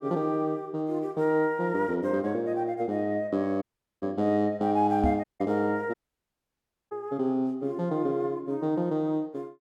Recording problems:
dropout; at 3.5 s, at 5 s and at 6 s for 1 s
microphone thump; at 5 s; peak +4 dB vs average level

